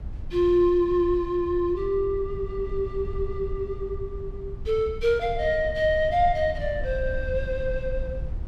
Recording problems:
rumble; below 74 Hz, SNR 11 dB

